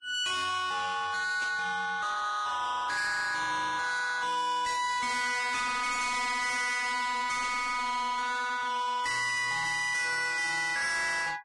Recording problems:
lossy codec; Vorbis, log-spectral distance 4 dB, nothing above 10.4 kHz
distorted audio; soft clipping, signal-to-distortion ratio 7 dB
burst of static; at 1.5 s and at 7.5 s; peak -9 dB vs average level

